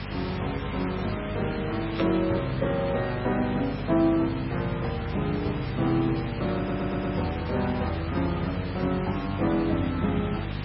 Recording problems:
codec artefacts; MP3, log-spectral distance 9 dB
hum; 50 Hz, harmonics up to 450 Hz, SNR 9 dB
background hiss; SNR 10 dB
static burst; at 2 s; peak -2 dB vs average level
audio stuttering; at 6.5 s

